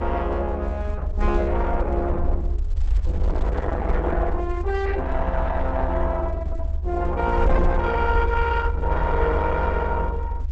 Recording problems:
lossy codec; Opus, log-spectral distance 3 dB, nothing above 7.8 kHz
low-frequency rumble; below 72 Hz, SNR 1 dB

